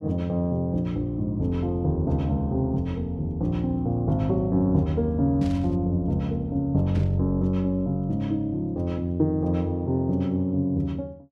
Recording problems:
burst of static; at 5.5 s and at 7 s; peak -15 dB vs average level

